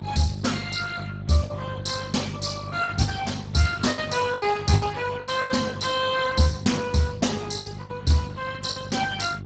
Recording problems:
lossy codec; Speex, log-spectral distance 6 dB, nothing above 7.8 kHz
hum; 50 Hz, harmonics up to 400 Hz, SNR 11 dB
packet loss; 9% of the sound replaced, filled with the last packet

